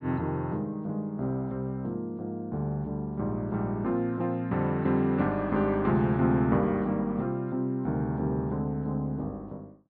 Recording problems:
low-pass filter; nothing above 4.9 kHz

